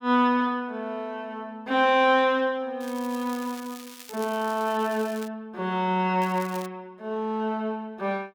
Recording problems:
crackling; from 3 to 5.5 s and at 6 s; loose cable, SNR 18 dB

